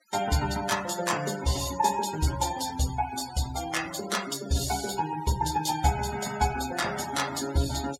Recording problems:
noise reduction artefacts; signal-to-artefact ratio 12 dB

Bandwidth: 16 kHz